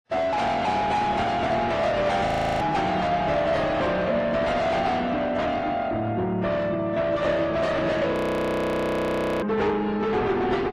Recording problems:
lossy compression; AAC, then AAC, log-spectral distance 2 dB, nothing above 13.1 kHz
distortion; soft clipping, signal-to-distortion ratio 6 dB
frozen audio; at 2.5 s and at 8 s for 1.5 s

